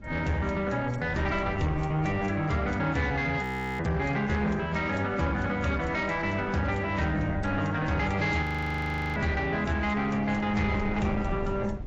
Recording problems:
lossy codec; AAC, log-spectral distance 3 dB
distortion; soft clipping, signal-to-distortion ratio 11 dB
wind noise; below 210 Hz, SNR 13 dB
frozen audio; at 3.5 s and at 8.5 s for 0.5 s

